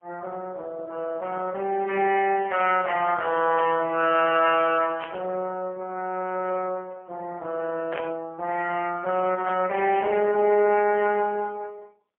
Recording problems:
telephone audio; 190 Hz to 3.1 kHz, AMR-NB, then MP3
burst of static; 4 times, first at 3.5 s; peak -6 dB vs average level

